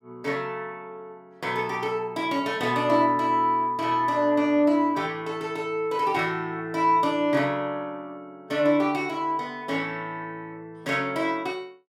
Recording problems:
none

